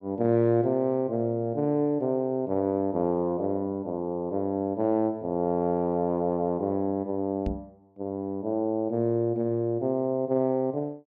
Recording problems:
microphone bump; at 7.5 s; peak -1 dB vs average level

